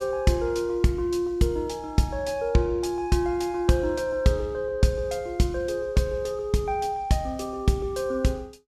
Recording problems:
none

